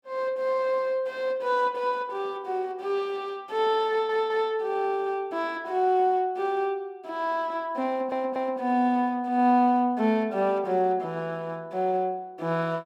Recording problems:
audio stuttering; at 4 s and at 8 s

